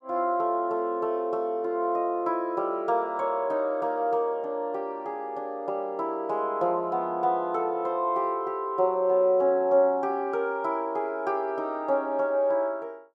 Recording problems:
none

